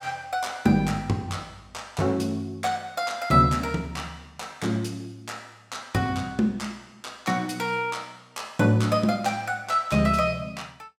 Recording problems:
none

